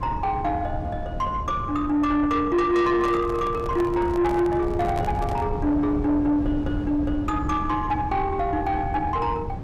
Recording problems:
distortion; soft clipping, signal-to-distortion ratio 11 dB
low-frequency rumble; below 190 Hz, SNR 8 dB
microphone handling noise; from 3 to 5.5 s; peak -5 dB vs average level

